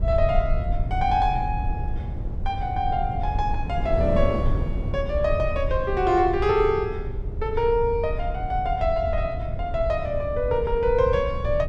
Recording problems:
rumble; below 82 Hz, SNR 6 dB
wind on the microphone; below 340 Hz, SNR 11 dB

